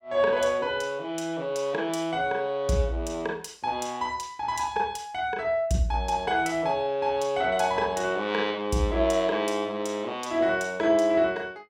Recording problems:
none

